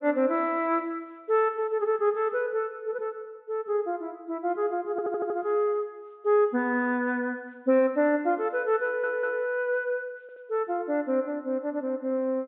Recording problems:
low-pass filter; nothing above 4 kHz
audio stuttering; at 5 s, at 9 s and at 10 s

